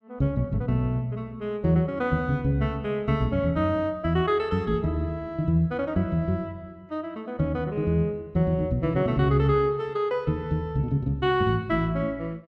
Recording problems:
none

